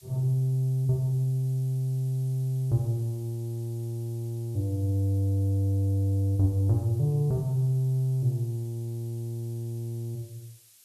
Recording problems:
hiss; SNR 26 dB

